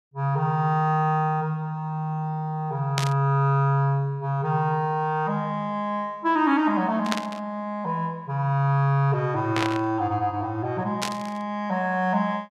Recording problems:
static burst; 4 times, first at 3 s; peak +2 dB vs average level

